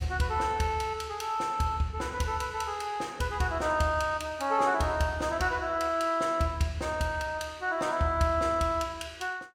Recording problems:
none

